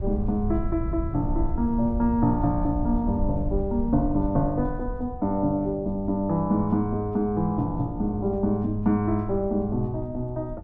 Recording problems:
rumble; below 82 Hz, SNR 9 dB

